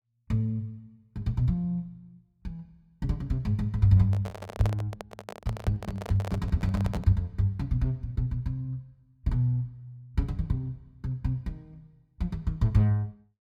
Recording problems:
microphone handling noise; from 4 to 7 s; peak -3 dB vs average level

